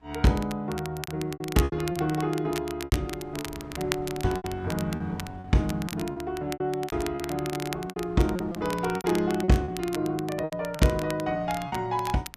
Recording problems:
wind noise; below 400 Hz, SNR 21 dB
crackle; vinyl, SNR 12 dB
packet loss; 11% of the sound replaced, filled with repeated pitch periods

